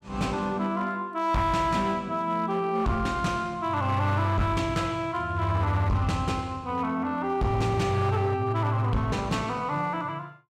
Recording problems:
distortion; hard clipping, uneven, signal-to-distortion ratio 11 dB

